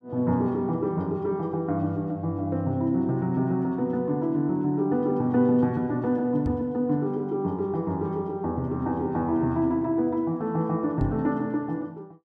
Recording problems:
microphone bump; at 6.5 s and at 11 s; peak 0 dB vs average level

